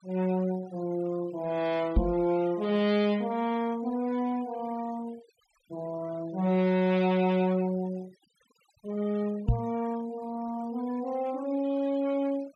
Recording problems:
denoising artefacts; signal-to-artefact ratio 22 dB
knock on the microphone; at 2 s and at 9.5 s; peak +8 dB vs average level

